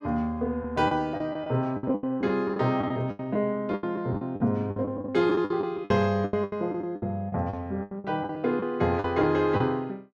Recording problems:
lost packets; 15% of the sound replaced, filled with the last packet

